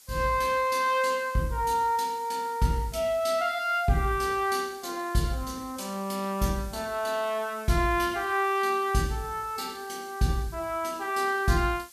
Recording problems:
background hiss; SNR 22 dB

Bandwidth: 14.5 kHz